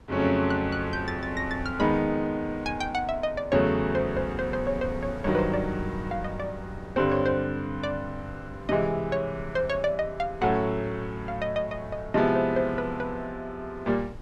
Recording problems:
wind noise; below 170 Hz, SNR 16 dB

